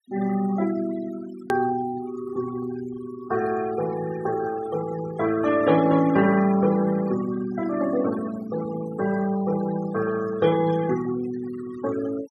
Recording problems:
noise reduction artefacts; signal-to-artefact ratio 15 dB
edit click; at 1.5 s

